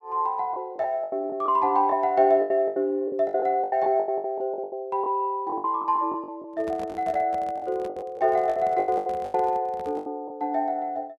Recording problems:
lost packets; 15% of the sound replaced, filled with the last packet
handling noise; from 6.5 to 10 s; peak -11 dB vs average level

